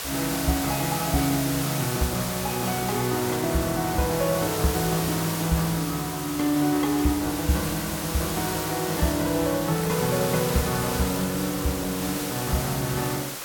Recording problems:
hiss; slope -1 dB per octave, SNR 5 dB

